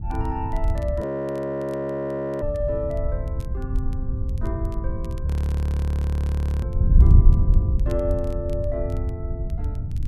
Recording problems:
wind on the microphone; below 84 Hz, SNR -6 dB
crackling; vinyl, SNR 26 dB
frozen audio; at 1 s for 1.5 s and at 5.5 s for 1.5 s

